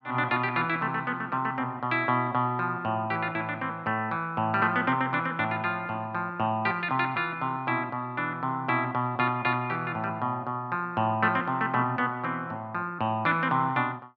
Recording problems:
none

